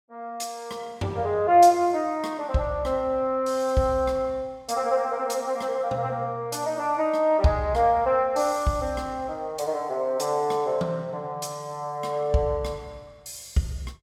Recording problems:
none

